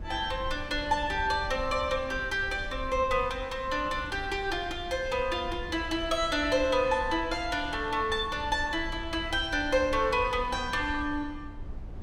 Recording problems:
low-frequency rumble; below 84 Hz, SNR 13 dB

